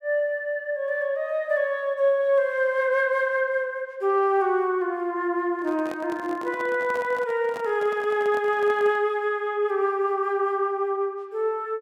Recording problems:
handling noise; from 5.5 to 9 s; peak -10 dB vs average level

